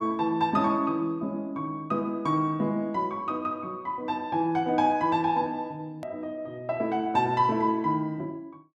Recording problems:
hard cut with a click; at 6 s

